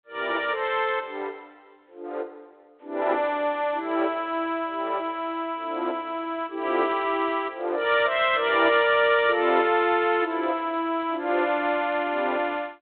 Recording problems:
phone line; 260 Hz to 3.6 kHz, G.726

